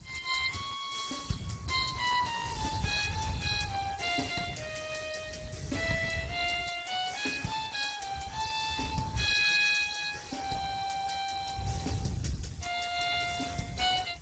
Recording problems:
lossy compression; Speex, log-spectral distance 7 dB, nothing above 7.6 kHz
hiss; slope +1 dB per octave, SNR 24 dB
wind on the microphone; below 150 Hz, SNR 10 dB

